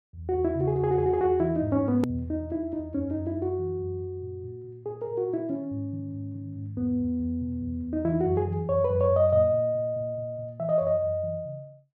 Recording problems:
hard cut with a click; at 2 s

